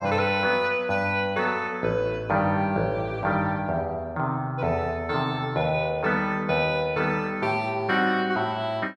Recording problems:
none

